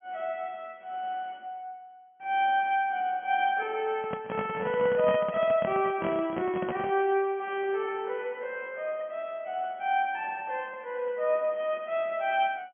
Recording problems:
treble missing; nothing above 3.3 kHz
microphone handling noise; from 4 to 7 s; peak -2 dB vs average level

